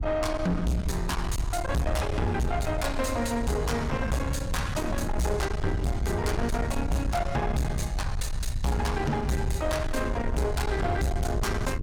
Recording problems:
distorted audio; soft clipping, signal-to-distortion ratio 6 dB
low-frequency rumble; below 98 Hz, SNR 4 dB
wind noise; below 190 Hz, SNR 11 dB

